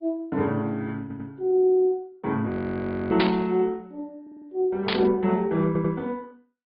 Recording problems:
treble missing; nothing above 4.5 kHz
codec artefacts; Opus, log-spectral distance 2 dB
audio stuttering; at 1 s, at 4 s and at 5.5 s
frozen audio; at 2.5 s for 0.5 s
burst of static; at 3 s and at 5 s; peak +2 dB vs average level

